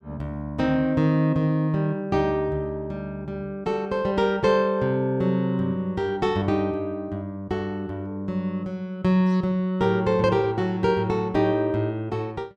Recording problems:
none

